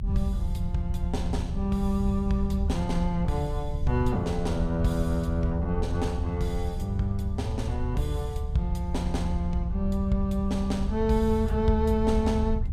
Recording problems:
low-frequency rumble; below 84 Hz, SNR 3 dB

